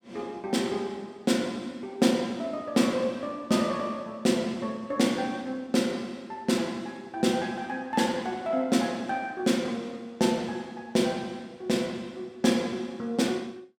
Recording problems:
none

